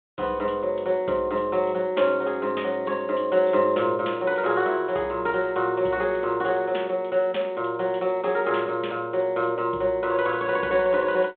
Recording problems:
phone line; 190 Hz to 3.7 kHz, G.726

